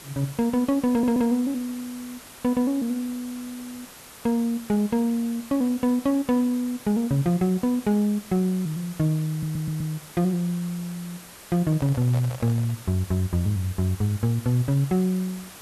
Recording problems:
background hiss; slope -2 dB per octave, SNR 18 dB
stutter; at 1 s and at 9.5 s
microphone handling noise; from 12 to 13 s; peak -8 dB vs average level

